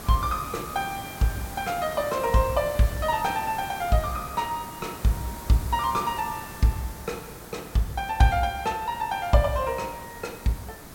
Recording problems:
hiss; SNR 12 dB

